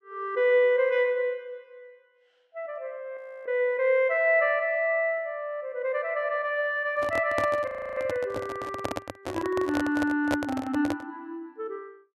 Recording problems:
frozen audio; at 3 s and at 7.5 s
handling noise; from 7 to 11 s; peak +2 dB vs average level

